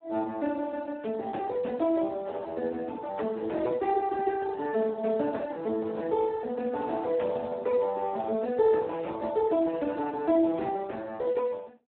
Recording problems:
phone line; 240 Hz to 2.8 kHz, Speex

